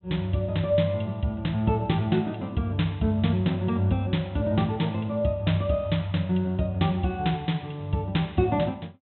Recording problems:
low-pass filter; nothing above 3.8 kHz

